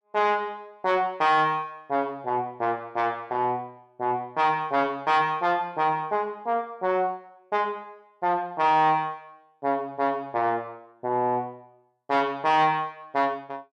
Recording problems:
distorted audio; soft clipping, signal-to-distortion ratio 12 dB

